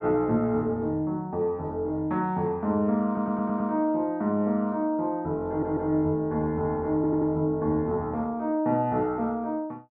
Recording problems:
stutter; at 3 s, at 5.5 s and at 7 s

